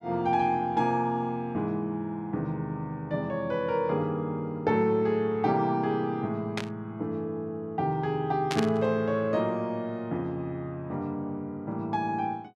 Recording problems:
burst of static; at 6.5 s and at 8.5 s; peak +1 dB vs average level

